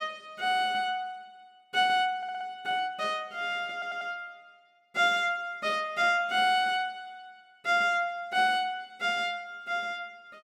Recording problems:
audio stuttering; at 2 s and at 3.5 s

